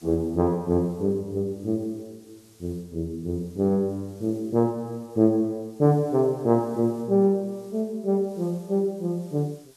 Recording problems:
background hiss; slope 0 dB per octave, SNR 30 dB

